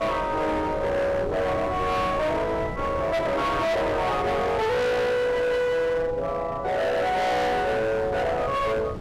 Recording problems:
distorted audio; hard clipping, signal-to-distortion ratio 6 dB
wind on the microphone; below 470 Hz, SNR 13 dB

